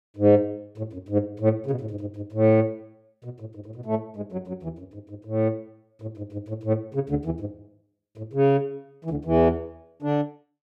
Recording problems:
none

